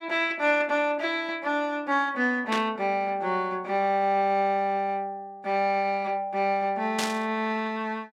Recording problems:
burst of static; at 2.5 s and at 7 s; peak +1 dB vs average level

